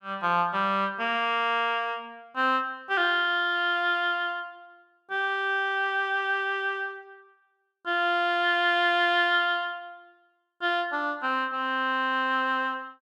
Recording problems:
none

